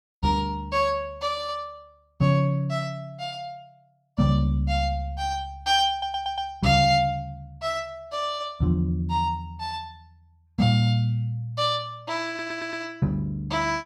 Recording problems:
audio stuttering; at 6 s and at 12 s

